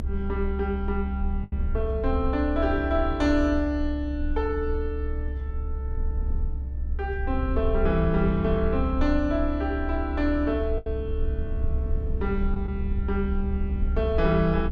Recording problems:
rumble; below 68 Hz, SNR 2 dB
packet loss; 1.4% of the sound replaced, filled with the last packet

